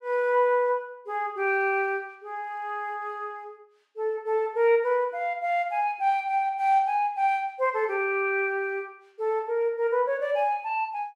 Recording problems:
none

